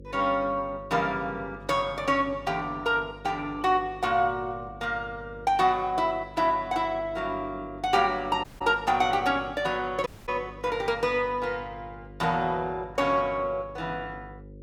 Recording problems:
electrical hum; 50 Hz, harmonics up to 550 Hz, SNR 19 dB
dropout; at 8.5 s and at 10 s

